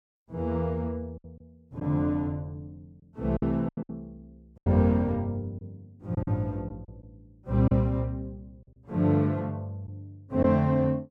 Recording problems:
packet loss; 6% of the sound replaced, filled with silence

